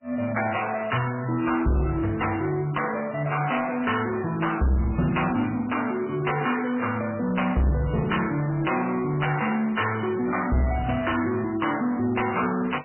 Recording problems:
lossy compression; MP3, log-spectral distance 9 dB, nothing above 3 kHz
distortion; soft clipping, signal-to-distortion ratio 8 dB

